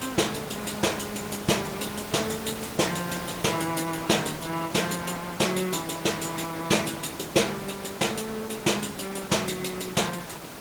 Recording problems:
codec artefacts; Opus, log-spectral distance 7 dB
hiss; slope -4 dB per octave, SNR 10 dB

